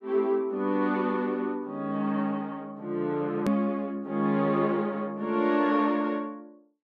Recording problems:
hard cut with a click; at 3.5 s

